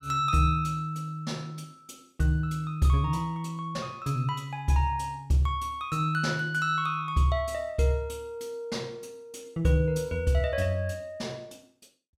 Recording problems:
none

